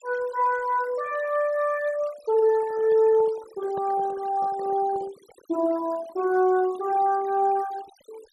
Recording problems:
noise reduction artefacts; signal-to-artefact ratio 22 dB
microphone handling noise; from 2.5 to 5.5 s; peak -12 dB vs average level

